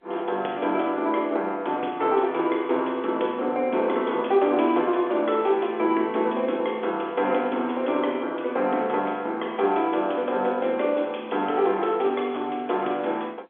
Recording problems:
telephone audio; 280 Hz to 3.5 kHz, G.711

